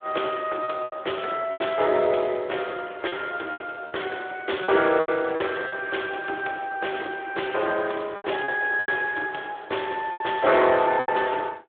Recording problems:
phone line; 300 Hz to 3.6 kHz, Speex
packet loss; 8% of the sound replaced, filled with repeated pitch periods

